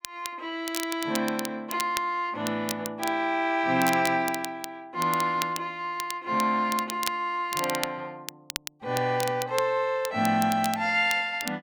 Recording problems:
crackle; vinyl, SNR 10 dB

